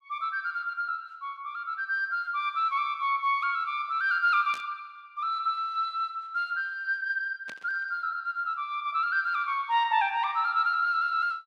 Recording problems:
static burst; at 4.5 s and at 7.5 s; peak -10 dB vs average level

